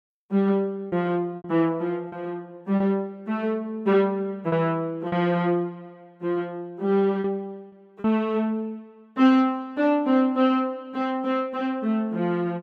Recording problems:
lost packets; 3% of the sound replaced, filled with repeated pitch periods

